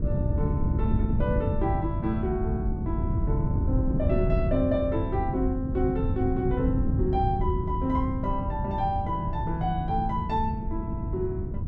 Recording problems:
wind noise; below 150 Hz, SNR 0 dB

